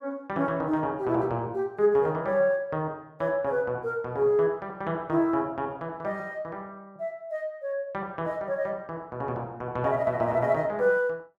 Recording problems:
none

